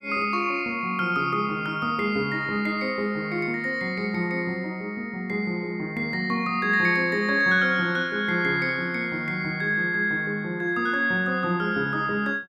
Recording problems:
none

